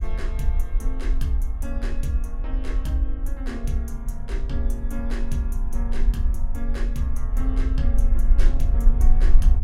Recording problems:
rumble; below 44 Hz, strongest tone 22 Hz, SNR -6 dB

